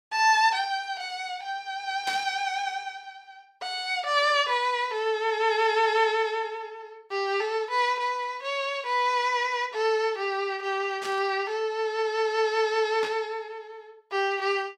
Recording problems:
burst of static; at 2 s, at 11 s and at 13 s; peak -5 dB vs average level

